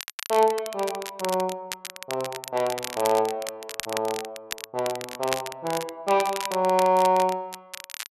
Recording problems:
crackle; vinyl, SNR 10 dB

